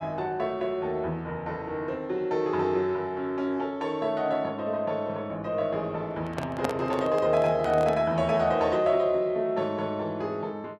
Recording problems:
handling noise; from 6 to 8 s; peak +2 dB vs average level

